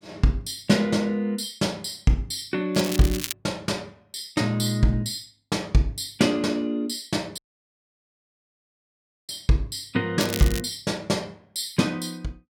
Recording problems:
crackling; at 3 s and at 10 s; loose cable, SNR 8 dB
audio cutting out; at 7.5 s for 2 s

